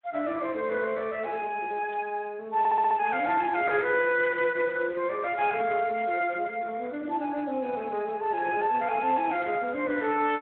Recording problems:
telephone audio; 240 Hz to 3.9 kHz, Speex
static burst; 4 times, first at 2 s; peak -17 dB vs average level
audio stuttering; at 2.5 s

